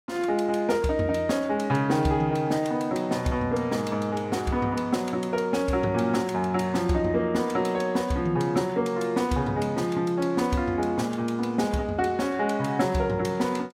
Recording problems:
none

